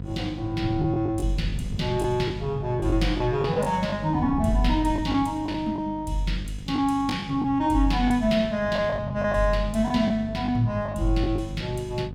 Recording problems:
mains hum; 50 Hz, harmonics up to 550 Hz, SNR 12 dB
wind noise; below 170 Hz, SNR 14 dB
lost packets; 6% of the sound replaced, filled with the last packet

